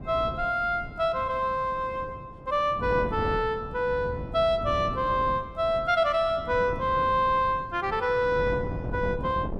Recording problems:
wind on the microphone; below 300 Hz, SNR 11 dB

